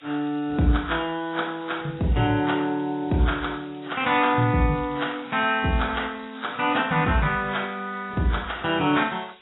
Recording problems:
codec artefacts; AAC, log-spectral distance 14 dB, nothing above 3.8 kHz
hiss; SNR 27 dB
crackling; from 4 to 7 s; loose cable, SNR 27 dB

